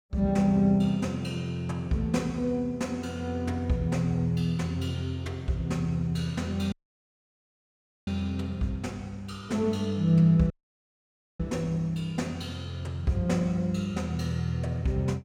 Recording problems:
audio cutting out; at 6.5 s for 1.5 s and at 11 s for 1 s

